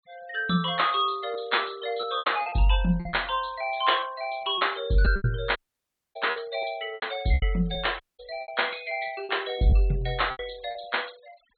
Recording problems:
treble missing; nothing above 4.3 kHz
denoising artefacts; signal-to-artefact ratio 24 dB
packet loss; 9% of the sound replaced, filled with repeated pitch periods
audio cutting out; at 5.5 s for 0.5 s and at 8 s

